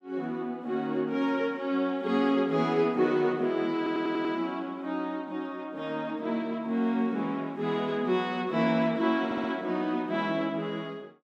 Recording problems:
stutter; at 4 s and at 9.5 s

